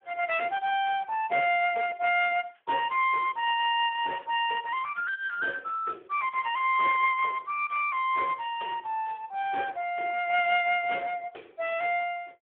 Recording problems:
phone line; 340 Hz to 3.4 kHz, Speex

